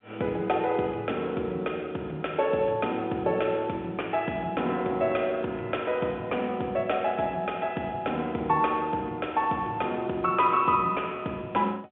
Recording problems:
telephone audio; 220 Hz to 3.4 kHz, G.711

